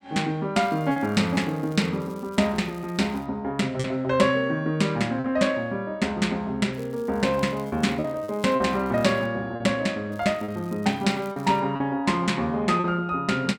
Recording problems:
packet loss; 4% of the sound replaced, filled with repeated pitch periods
crackling; from 0.5 to 3.5 s, from 6.5 to 9.5 s and from 10 to 12 s; loose cable, SNR 28 dB

